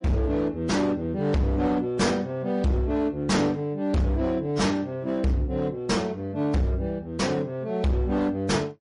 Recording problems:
lossy codec; AAC, then MP3, log-spectral distance 2 dB, nothing above 10.4 kHz
distortion; hard clipping, signal-to-distortion ratio 8 dB

